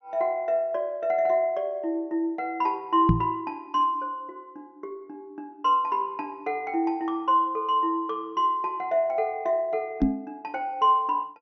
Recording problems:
treble missing; nothing above 6.2 kHz
microphone thump; at 3 s and at 10 s; peak +8 dB vs average level

